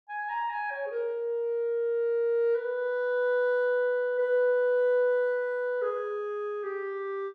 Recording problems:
none

